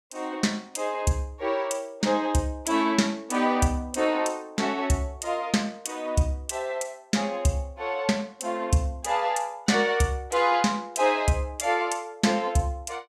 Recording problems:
none

